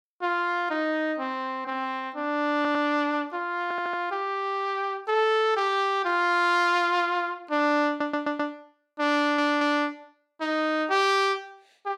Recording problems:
audio stuttering; 4 times, first at 2.5 s

